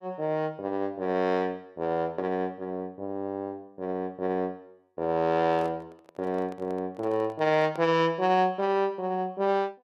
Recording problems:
handling noise; from 5.5 to 8 s; peak -10 dB vs average level

